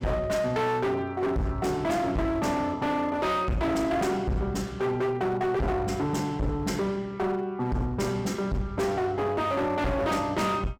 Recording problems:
distorted audio; hard clipping, signal-to-distortion ratio 6 dB

